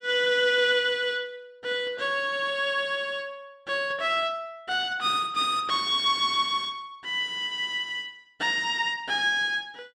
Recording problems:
none

